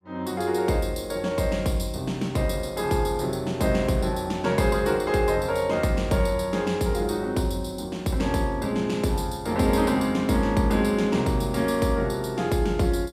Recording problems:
none

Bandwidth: 15.5 kHz